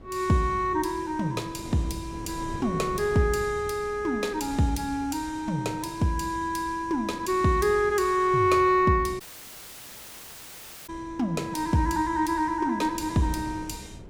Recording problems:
wind noise; below 360 Hz, SNR 18 dB
dropout; at 9 s for 1.5 s

